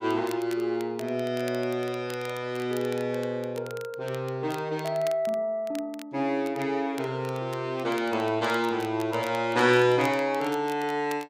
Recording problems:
crackling; vinyl, SNR 20 dB

